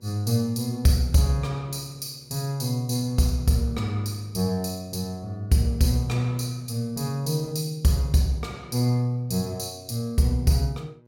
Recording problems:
electrical hum; 60 Hz, harmonics up to 1.1 kHz, SNR 31 dB

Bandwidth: 17 kHz